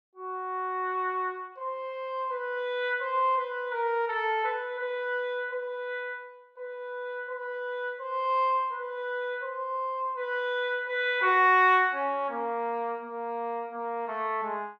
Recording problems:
none

